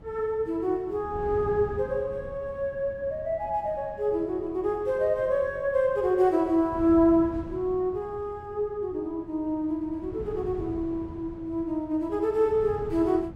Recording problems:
wind noise; below 230 Hz, SNR 16 dB

